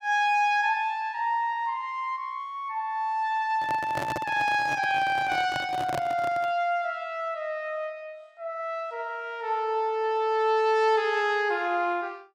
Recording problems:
microphone handling noise; from 3.5 to 6.5 s; peak -2 dB vs average level

